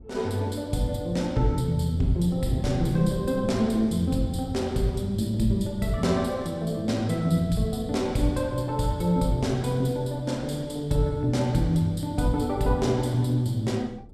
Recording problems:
wind on the microphone; below 230 Hz, SNR 17 dB

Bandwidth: 13.5 kHz